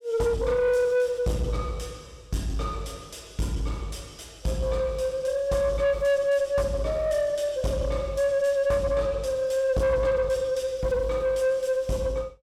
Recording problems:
distorted audio; soft clipping, signal-to-distortion ratio 10 dB

